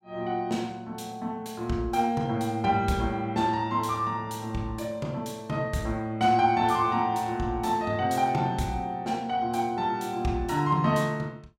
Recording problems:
none

